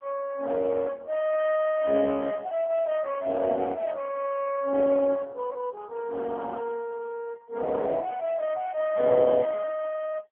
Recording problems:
phone line; 300 Hz to 3.3 kHz, AMR-NB

